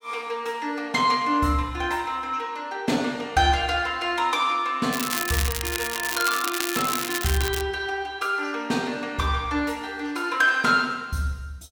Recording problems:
crackle; from 5 to 7.5 s; loose cable, SNR 4 dB

